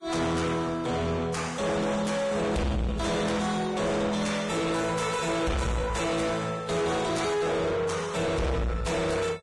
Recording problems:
codec artefacts; Vorbis, log-spectral distance 4 dB, nothing above 10.4 kHz
distortion; soft clipping, signal-to-distortion ratio 5 dB

